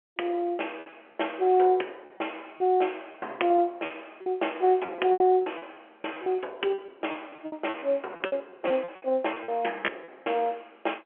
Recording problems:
phone line; 300 Hz to 3.2 kHz, G.711
lost packets; 12% of the sound replaced, filled with repeated pitch periods

